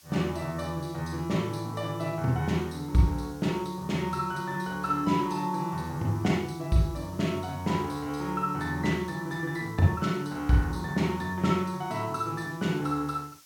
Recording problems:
hiss; slope +2 dB per octave, SNR 24 dB

